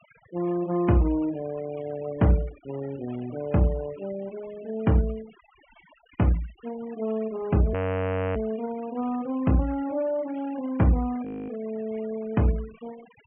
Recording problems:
treble cut off; nothing above 3 kHz
denoising artefacts; signal-to-artefact ratio 22 dB
audio freezing; at 7.5 s for 0.5 s and at 11 s

